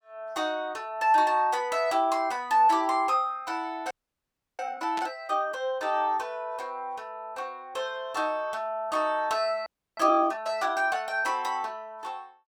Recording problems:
frozen audio; at 4 s for 0.5 s and at 9.5 s
static burst; at 5 s; peak -6 dB vs average level

